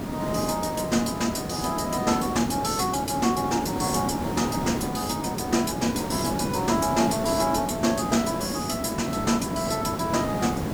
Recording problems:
background hiss; slope -8 dB per octave, SNR 4 dB

